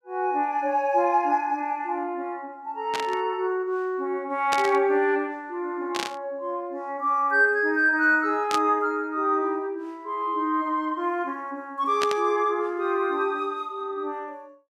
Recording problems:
burst of static; 5 times, first at 3 s; peak +1 dB vs average level

